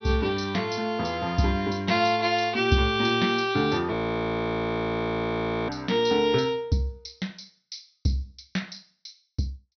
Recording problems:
treble cut off; nothing above 6 kHz
frozen audio; at 4 s for 1.5 s

